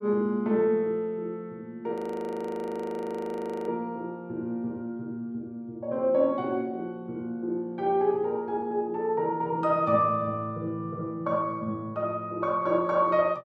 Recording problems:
frozen audio; at 2 s for 1.5 s

